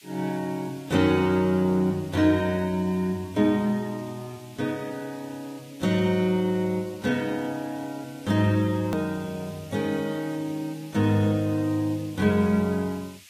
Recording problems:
lossy compression; AAC, log-spectral distance 3 dB, nothing above 20.1 kHz
background hiss; SNR 23 dB
hard cut with a click; at 9 s

